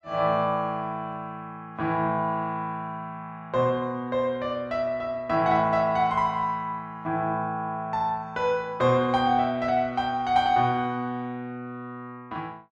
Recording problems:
none

